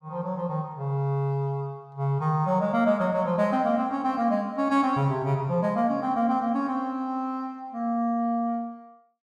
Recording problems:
none

